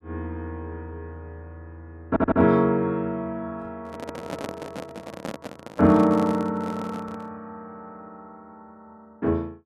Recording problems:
audio stuttering; at 2 s
microphone handling noise; from 4 to 7.5 s; peak -4 dB vs average level

